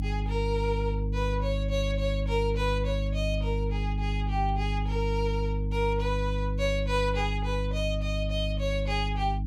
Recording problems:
hum; 50 Hz, harmonics up to 300 Hz, SNR -1 dB

